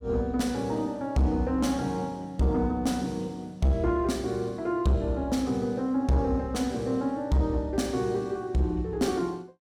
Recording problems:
distorted audio; soft clipping, signal-to-distortion ratio 11 dB

